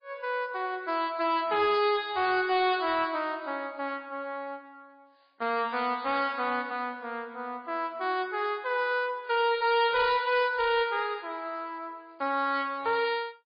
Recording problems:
lossy compression; MP3, log-spectral distance 2 dB, nothing above 4.6 kHz
distortion; hard clipping, signal-to-distortion ratio 10 dB

